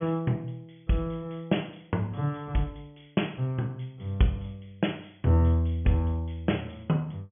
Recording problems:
low-pass filter; nothing above 3.4 kHz

